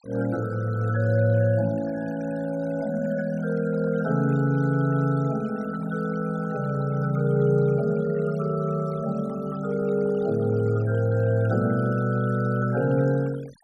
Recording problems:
denoising artefacts; signal-to-artefact ratio 22 dB

